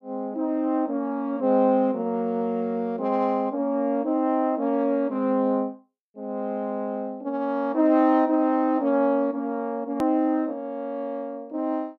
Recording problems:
click at an edit; at 10 s

